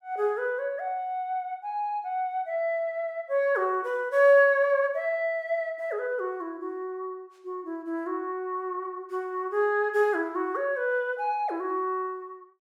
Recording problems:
none

